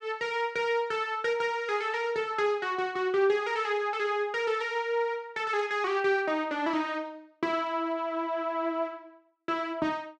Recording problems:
none

